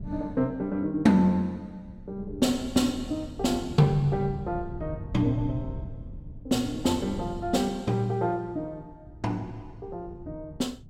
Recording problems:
wind noise; below 140 Hz, SNR 15 dB

